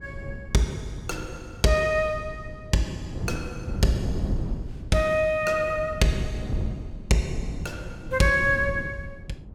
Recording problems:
wind on the microphone; below 180 Hz, SNR 9 dB

